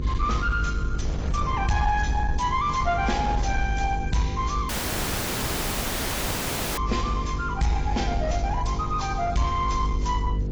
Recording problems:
codec artefacts; AAC, log-spectral distance 3 dB
distortion; soft clipping, signal-to-distortion ratio 10 dB
hum; 50 Hz, harmonics up to 500 Hz, SNR 6 dB
rumble; below 74 Hz, SNR 4 dB
wind on the microphone; below 720 Hz, SNR 17 dB
audio cutting out; at 4.5 s for 2 s

